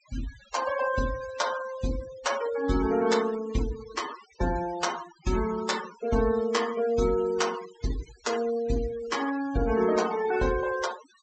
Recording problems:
treble missing; nothing above 8 kHz
noise reduction artefacts; signal-to-artefact ratio 13 dB

